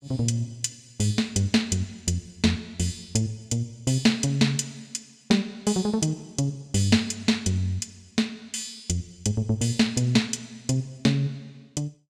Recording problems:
none

